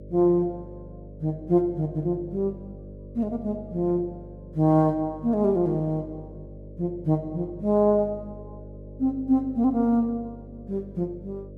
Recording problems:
electrical hum; 50 Hz, harmonics up to 600 Hz, SNR 17 dB

